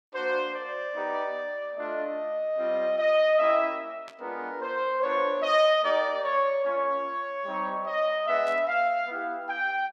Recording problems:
burst of static; at 4 s and at 8.5 s; peak -15 dB vs average level

